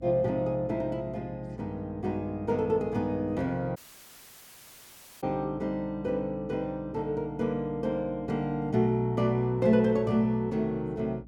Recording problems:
hum; 60 Hz, harmonics up to 300 Hz, SNR 20 dB
dropout; at 4 s for 1.5 s

